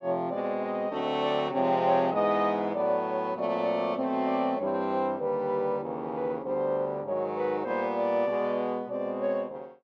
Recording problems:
none

